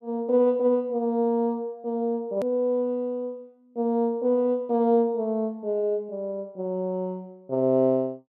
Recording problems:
click at an edit; at 2.5 s

